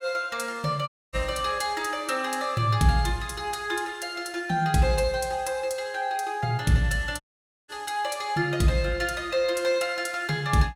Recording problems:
audio cutting out; at 1 s and at 7 s

